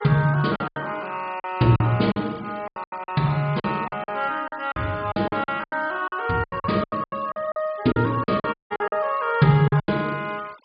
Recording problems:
low-pass filter; nothing above 5 kHz
noise reduction artefacts; signal-to-artefact ratio 24 dB
lost packets; 15% of the sound replaced, filled with silence
audio cutting out; at 8.5 s

